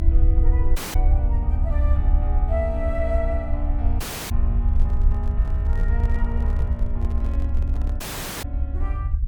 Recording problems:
rumble; below 68 Hz, SNR -10 dB
dropout; at 1 s, at 4 s and at 8 s
handling noise; from 4.5 to 8 s; peak -4 dB vs average level

